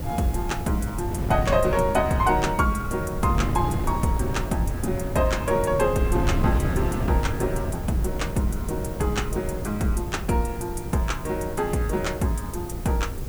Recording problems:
hiss; SNR 19 dB
wind noise; below 210 Hz, SNR 4 dB

